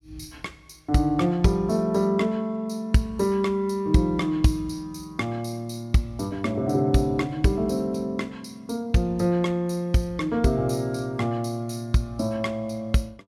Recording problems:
none

